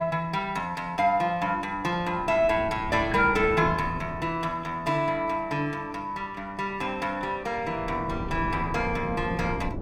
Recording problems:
wind on the microphone; below 290 Hz, SNR 11 dB

